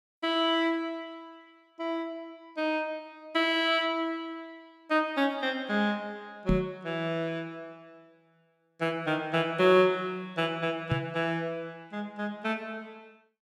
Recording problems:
knock on the microphone; at 6.5 s and at 11 s; peak +6 dB vs average level

